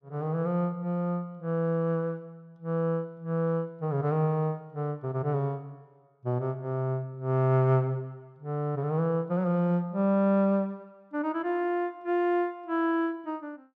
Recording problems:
none

